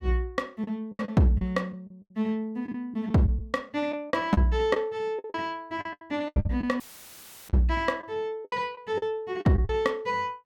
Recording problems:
lost packets; 11% of the sound replaced, filled with the last packet
dropout; at 7 s for 0.5 s; filled with static

